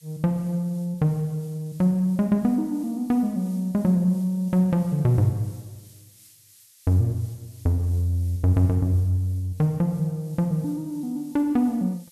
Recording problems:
background hiss; SNR 27 dB

